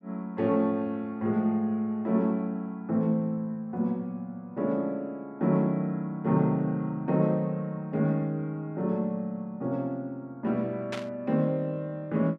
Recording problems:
static burst; at 11 s; peak -3 dB vs average level

